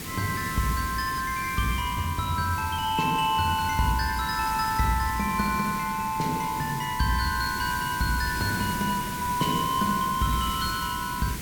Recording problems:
background hiss; SNR 8 dB

